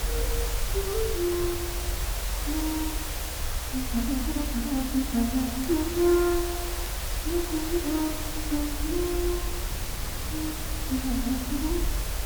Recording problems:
hiss; slope -2 dB per octave, SNR 4 dB
low-frequency rumble; below 66 Hz, strongest tone 44 Hz, SNR 6 dB
wind noise; below 130 Hz, SNR 15 dB
crackle; vinyl, SNR 26 dB

